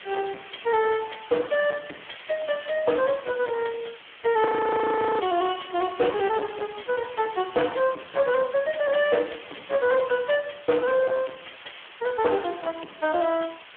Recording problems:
telephone audio; 300 Hz to 3.2 kHz, Speex
distorted audio; soft clipping, signal-to-distortion ratio 10 dB
hiss; SNR 18 dB
audio freezing; at 4.5 s for 1 s

